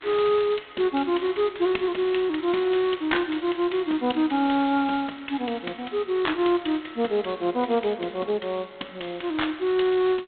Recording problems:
telephone audio; 220 Hz to 3.9 kHz, G.726

